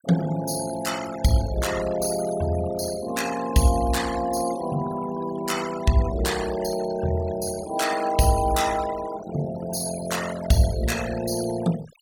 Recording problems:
noise reduction artefacts; signal-to-artefact ratio 12 dB

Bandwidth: 18 kHz